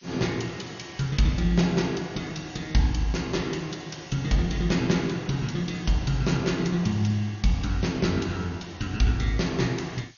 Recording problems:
codec artefacts; MP2, log-spectral distance 6 dB, nothing above 6.7 kHz
hiss; slope +5 dB per octave, SNR 27 dB

